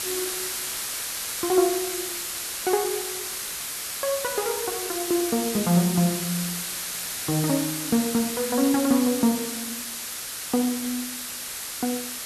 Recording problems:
hiss; slope +1 dB per octave, SNR 3 dB

